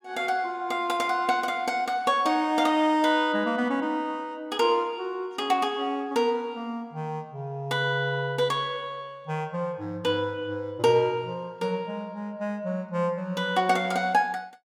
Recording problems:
none

